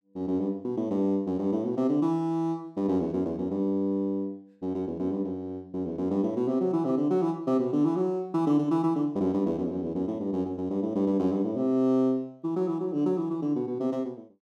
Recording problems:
none

